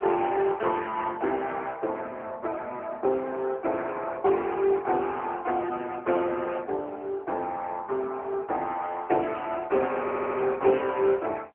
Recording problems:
phone line; 300 Hz to 3.3 kHz, AMR-NB
stutter; at 10 s

